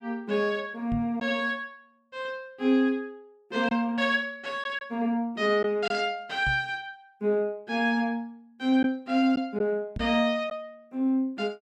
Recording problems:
lost packets; 1.4% of the sound replaced, filled with silence
microphone thump; at 1 s, at 6.5 s and at 10 s; peak -3 dB vs average level

